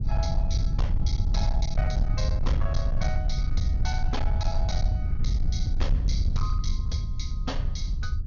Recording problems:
low-pass filter; nothing above 6.8 kHz
distorted audio; hard clipping, signal-to-distortion ratio 11 dB
rumble; below 78 Hz, SNR -7 dB

